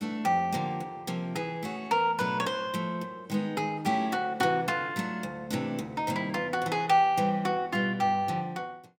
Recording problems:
none

